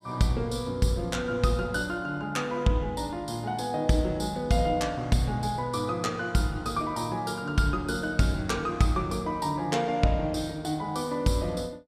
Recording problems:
none

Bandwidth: 15.5 kHz